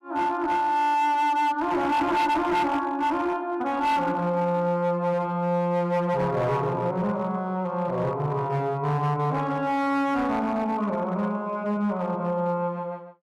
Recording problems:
distorted audio; hard clipping, uneven, signal-to-distortion ratio 12 dB

